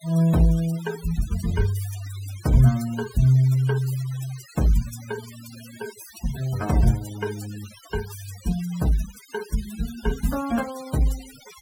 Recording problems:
noise reduction artefacts; signal-to-artefact ratio 17 dB

